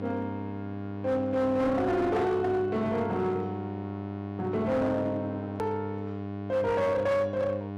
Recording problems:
distorted audio; hard clipping, uneven, signal-to-distortion ratio 12 dB
hum; 50 Hz, harmonics up to 1.8 kHz, SNR 8 dB
edit click; at 5.5 s

